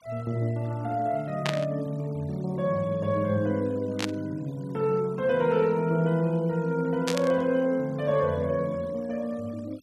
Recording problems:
denoising artefacts; signal-to-artefact ratio 27 dB
burst of static; at 1.5 s, at 4 s and at 7 s; peak +2 dB vs average level

